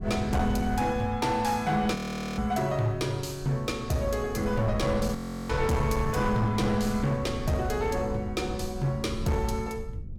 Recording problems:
distorted audio; hard clipping, signal-to-distortion ratio 11 dB
wind noise; below 120 Hz, SNR 9 dB
audio freezing; at 2 s and at 5 s

